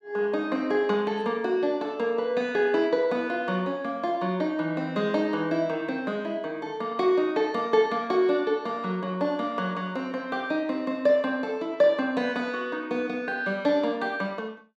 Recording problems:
none

